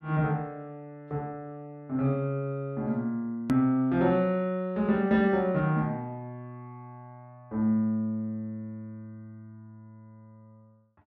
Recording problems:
click at an edit; at 3.5 s

